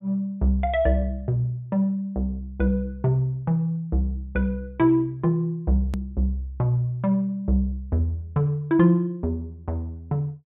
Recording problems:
low-pass filter; nothing above 3.7 kHz
hard cut with a click; at 6 s

